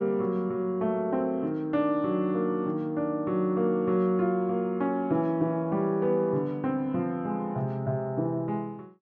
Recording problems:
treble missing; nothing above 7 kHz

